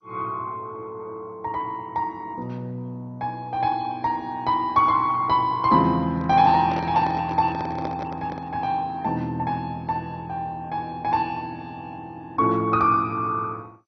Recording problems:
codec artefacts; MP2, log-spectral distance 2 dB, nothing above 5.8 kHz
microphone handling noise; from 6 to 8.5 s; peak -5 dB vs average level

